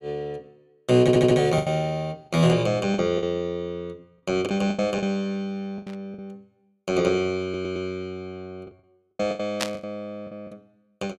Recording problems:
lost packets; 9% of the sound replaced, filled with the last packet
audio stuttering; at 1 s and at 7.5 s
burst of static; at 6 s and at 9.5 s; peak +3 dB vs average level

